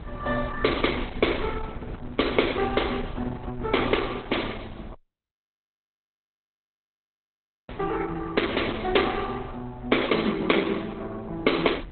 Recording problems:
lossy compression; Opus, log-spectral distance 6 dB, nothing above 4 kHz
wind on the microphone; below 150 Hz, SNR 16 dB
audio cutting out; at 5 s for 2.5 s

